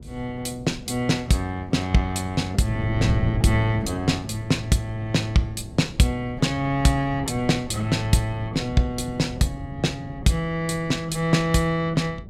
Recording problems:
wind noise; below 210 Hz, SNR 11 dB

